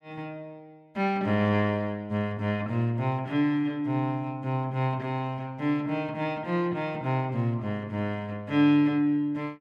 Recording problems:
none

